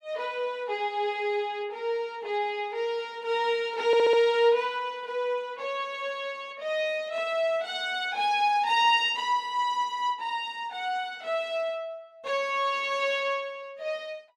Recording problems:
stutter; at 4 s

